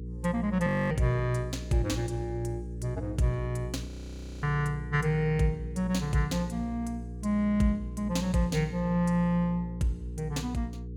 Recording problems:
hum; 60 Hz, harmonics up to 480 Hz, SNR 9 dB
frozen audio; at 0.5 s and at 4 s for 0.5 s

